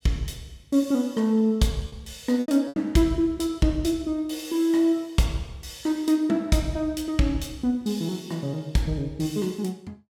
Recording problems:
lost packets; 2% of the sound replaced, filled with repeated pitch periods

